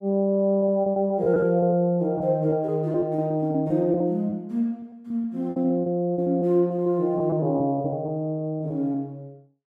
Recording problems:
packet loss; 12% of the sound replaced, filled with repeated pitch periods

